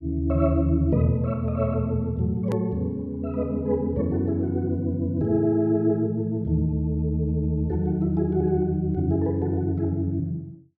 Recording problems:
click at an edit; at 2.5 s

